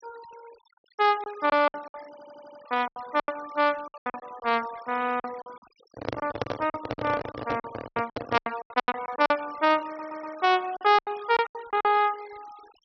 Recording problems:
treble cut off; nothing above 5.9 kHz
denoising artefacts; signal-to-artefact ratio 21 dB
packet loss; 16% of the sound replaced, filled with silence
stutter; at 2 s and at 10 s
handling noise; from 6 to 8.5 s; peak +2 dB vs average level

